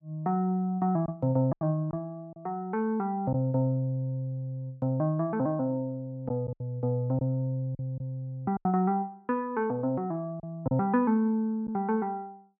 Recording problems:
lost packets; 4% of the sound replaced, filled with silence

